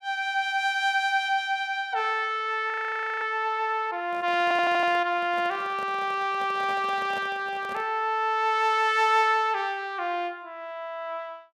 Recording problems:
frozen audio; at 2.5 s for 0.5 s
handling noise; from 4 to 8 s; peak -10 dB vs average level
stutter; at 4.5 s

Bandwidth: 15 kHz